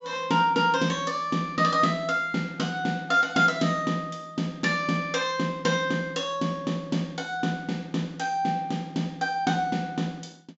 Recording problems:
low-pass filter; nothing above 7.5 kHz

